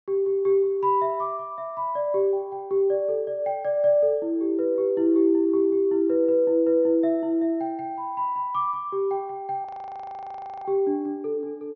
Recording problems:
low-pass filter; nothing above 6.3 kHz
frozen audio; at 9.5 s for 1 s

